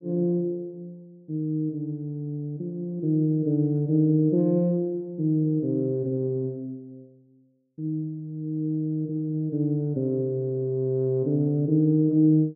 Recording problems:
none

